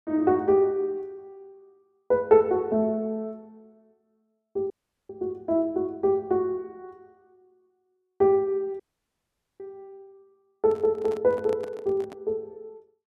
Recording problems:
audio cutting out; at 4.5 s and at 9 s for 1 s
microphone handling noise; from 11 to 12 s; peak -11 dB vs average level

